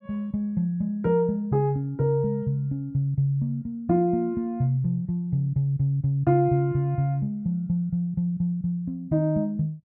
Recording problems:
none

